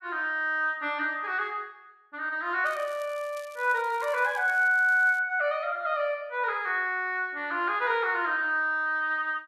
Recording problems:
crackling; from 2.5 to 5 s; loose cable, SNR 25 dB

